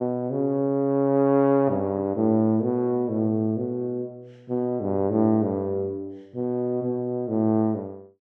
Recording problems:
none

